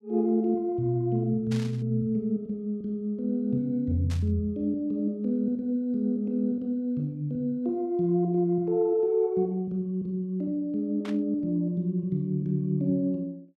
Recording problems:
static burst; at 1.5 s, at 4 s and at 11 s; peak -10 dB vs average level

